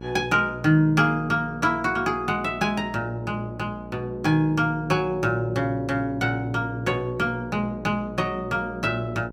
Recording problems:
electrical hum; 60 Hz, harmonics up to 1.1 kHz, SNR 15 dB

